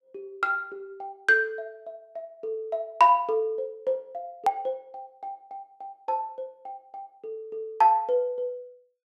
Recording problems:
click at an edit; at 4.5 s

